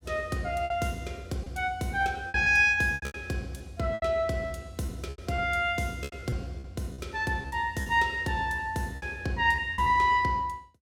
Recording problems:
packet loss; 10% of the sound replaced, filled with repeated pitch periods

